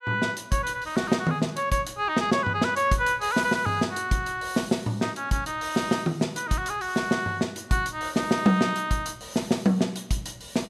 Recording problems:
none

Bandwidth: 14.5 kHz